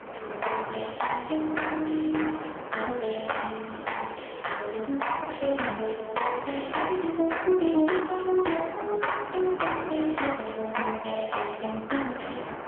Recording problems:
phone line; 240 Hz to 3.3 kHz, AMR-NB
wind noise; below 1.3 kHz, SNR 11 dB

